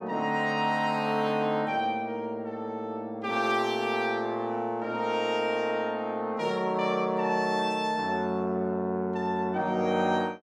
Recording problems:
none

